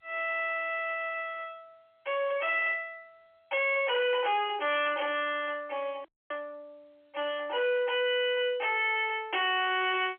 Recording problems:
telephone audio; 340 Hz to 3.3 kHz, G.711
distortion; hard clipping, uneven, signal-to-distortion ratio 5 dB
dropout; at 6 s

